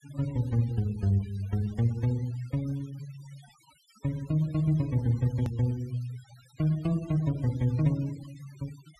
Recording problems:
denoising artefacts; signal-to-artefact ratio 23 dB
click at an edit; at 5.5 s

